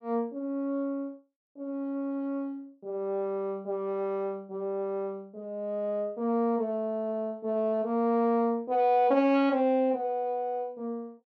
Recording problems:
none

